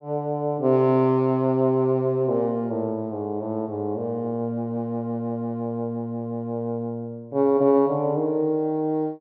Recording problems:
none

